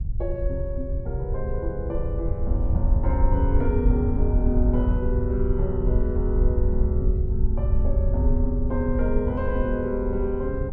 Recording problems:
wind noise; below 74 Hz, SNR -3 dB

